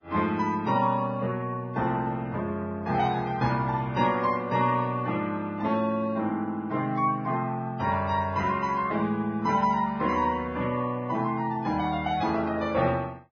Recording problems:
lossy codec; Vorbis, log-spectral distance 2 dB, nothing above 5.8 kHz

